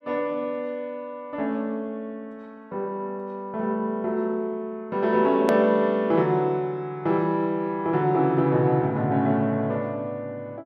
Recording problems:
edit click; at 5.5 s

